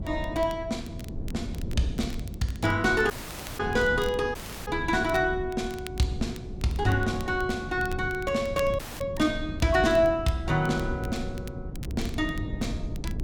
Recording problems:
wind on the microphone; below 180 Hz, SNR 9 dB
crackle; vinyl, SNR 21 dB
dropout; at 3 s, at 4.5 s and at 9 s

